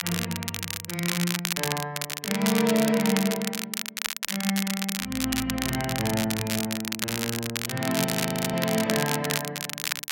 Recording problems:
crackle; vinyl, SNR 2 dB
frozen audio; at 8 s

